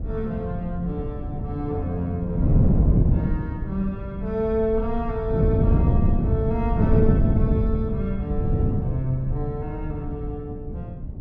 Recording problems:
rumble; below 74 Hz, SNR 8 dB
wind on the microphone; below 180 Hz, SNR -4 dB

